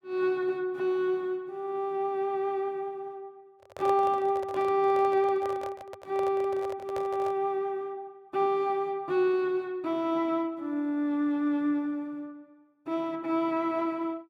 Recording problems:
handling noise; from 3.5 to 7.5 s; peak -5 dB vs average level

